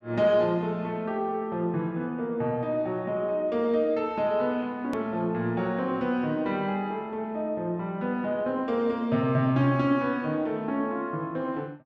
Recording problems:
hard cut with a click; at 5 s

